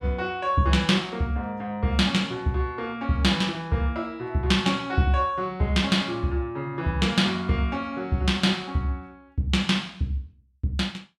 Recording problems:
none

